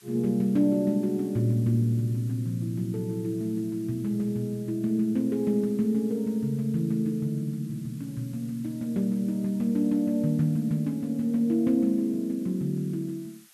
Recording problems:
hiss; SNR 26 dB

